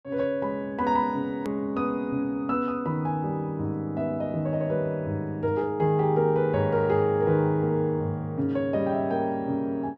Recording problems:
edit click; at 1.5 s

